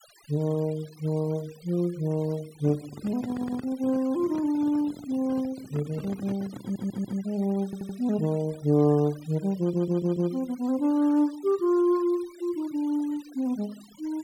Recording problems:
noise reduction artefacts; signal-to-artefact ratio 23 dB
handling noise; from 2.5 to 7.5 s; peak -6 dB vs average level
audio stuttering; 4 times, first at 3.5 s

